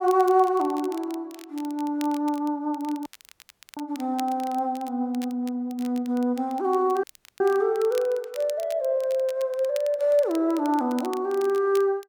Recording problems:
crackle; vinyl, SNR 21 dB
audio cutting out; at 3 s for 0.5 s and at 7 s

